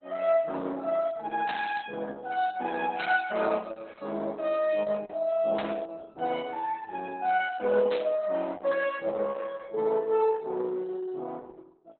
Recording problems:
codec artefacts; Opus, log-spectral distance 3 dB, nothing above 3.9 kHz
static burst; 4 times, first at 1.5 s; peak -5 dB vs average level

